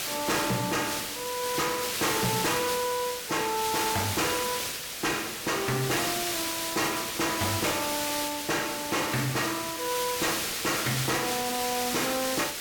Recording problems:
distortion; hard clipping, signal-to-distortion ratio 10 dB
hiss; SNR 1 dB

